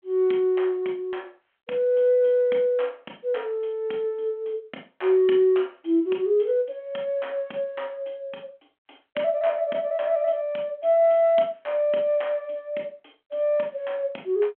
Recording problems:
telephone audio; 220 Hz to 3.3 kHz, G.726

